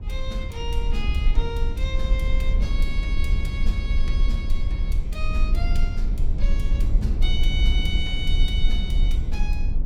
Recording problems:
rumble; below 52 Hz, strongest tone 22 Hz, SNR -8 dB

